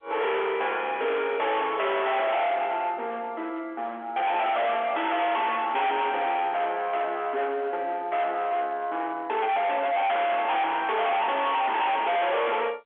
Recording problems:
phone line; 370 Hz to 3.5 kHz, G.711
distorted audio; hard clipping, signal-to-distortion ratio 6 dB

